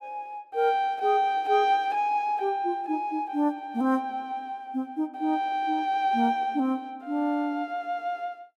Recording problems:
none

